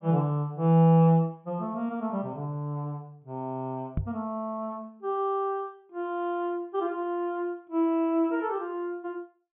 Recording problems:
treble cut off; nothing above 3.5 kHz
microphone bump; at 4 s; peak +2 dB vs average level

